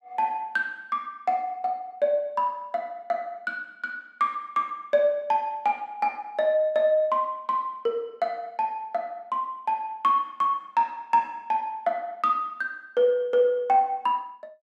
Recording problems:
none

